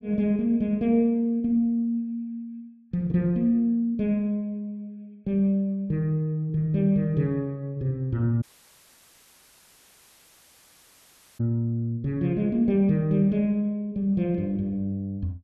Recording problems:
dropout; at 8.5 s for 3 s

